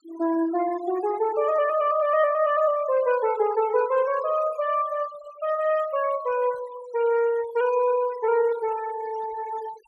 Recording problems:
noise reduction artefacts; signal-to-artefact ratio 19 dB

